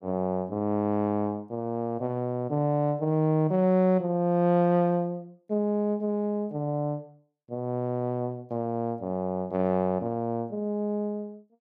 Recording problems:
none

